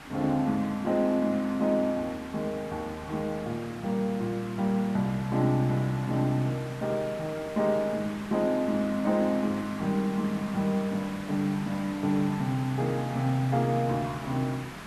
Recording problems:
background hiss; SNR 14 dB

